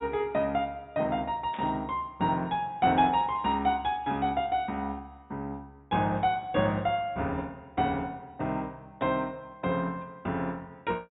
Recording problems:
treble cut off; nothing above 4 kHz
burst of static; at 1.5 s and at 9 s; peak -12 dB vs average level

